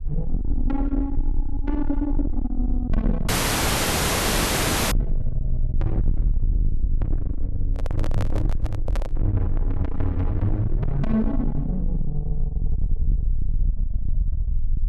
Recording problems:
distorted audio; soft clipping, signal-to-distortion ratio 7 dB
low-frequency rumble; below 52 Hz, strongest tone 20 Hz, SNR 0 dB
dropout; at 3.5 s for 1.5 s
microphone handling noise; from 7.5 to 9 s; peak +1 dB vs average level

